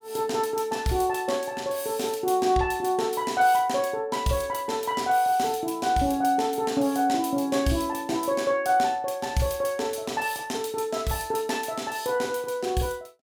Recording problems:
none

